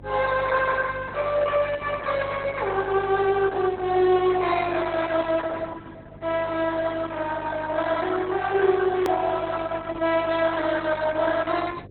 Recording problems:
lossy compression; Opus, log-spectral distance 4 dB, nothing above 3.7 kHz
hum; 50 Hz, harmonics up to 550 Hz, SNR 19 dB
click at an edit; at 9 s

